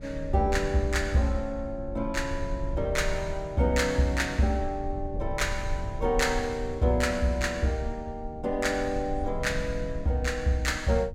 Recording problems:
rumble; below 80 Hz, SNR 10 dB

